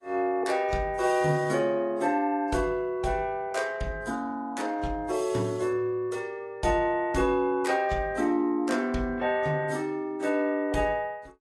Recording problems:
lossy codec; AAC, log-spectral distance 2 dB, nothing above 11.3 kHz

